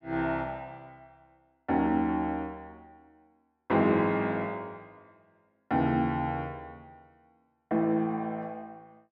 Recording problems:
none

